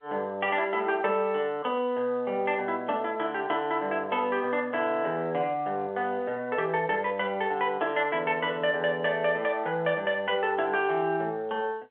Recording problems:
telephone audio; 300 Hz to 3.5 kHz, G.711

